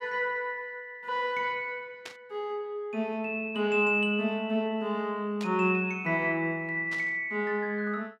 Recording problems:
burst of static; at 2 s, at 5.5 s and at 7 s; peak -7 dB vs average level

